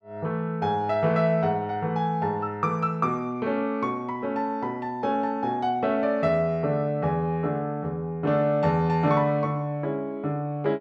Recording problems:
none

